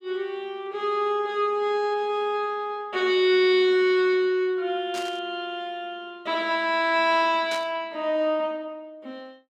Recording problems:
static burst; at 5 s and at 7.5 s; peak -7 dB vs average level

